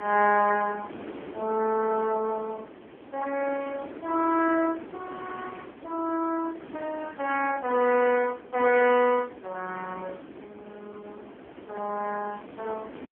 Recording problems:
telephone audio; 240 Hz to 2.6 kHz, AMR-NB
wind noise; below 680 Hz, SNR 17 dB

